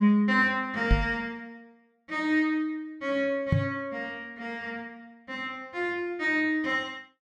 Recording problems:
microphone thump; at 1 s and at 3.5 s; peak +8 dB vs average level

